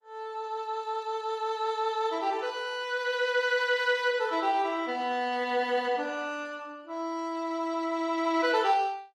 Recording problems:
codec artefacts; AAC, then Opus, log-spectral distance 2 dB, nothing above 16 kHz

